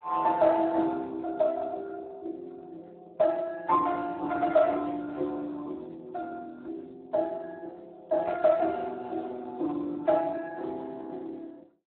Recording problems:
telephone audio; 260 Hz to 2 kHz, Speex

